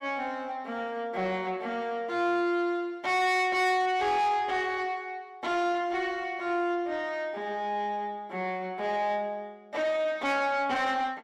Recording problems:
distortion; soft clipping, signal-to-distortion ratio 11 dB

